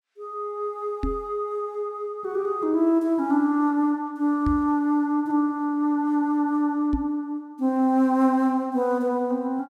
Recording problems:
microphone thump; at 1 s, at 4.5 s and at 7 s; peak 0 dB vs average level

